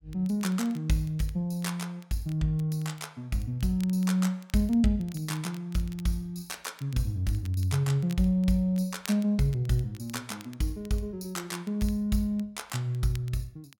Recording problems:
crackle; vinyl, SNR 25 dB

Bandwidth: 17 kHz